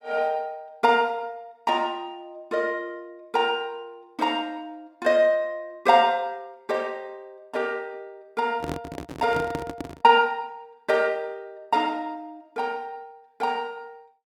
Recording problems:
microphone handling noise; from 8.5 to 10 s; peak -2 dB vs average level

